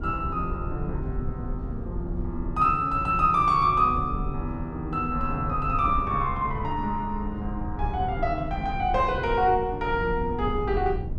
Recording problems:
low-frequency rumble; below 100 Hz, SNR 9 dB

